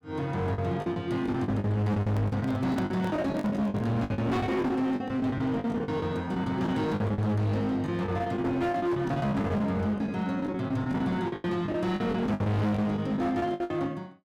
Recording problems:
distorted audio; hard clipping, uneven, signal-to-distortion ratio 6 dB
lost packets; 16% of the sound replaced, filled with the last packet
handling noise; from 2 to 4 s; peak -2 dB vs average level

